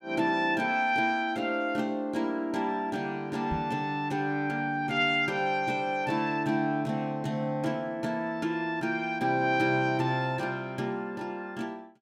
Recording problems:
microphone bump; at 3.5 s; peak -2 dB vs average level

